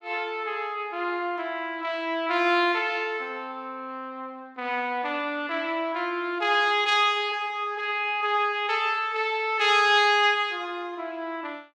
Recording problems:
none

